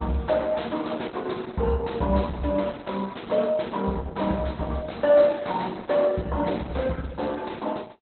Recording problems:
codec artefacts; Opus, log-spectral distance 6 dB, nothing above 4.1 kHz

